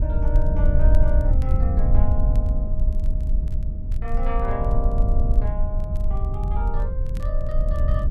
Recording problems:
low-frequency rumble; below 64 Hz, SNR -9 dB
crackle; vinyl, SNR 25 dB

